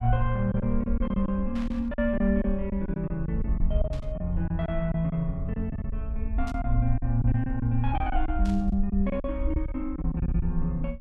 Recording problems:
low-frequency rumble; below 60 Hz, SNR 4 dB
packet loss; 11% of the sound replaced, filled with silence
static burst; 4 times, first at 1.5 s; peak -12 dB vs average level

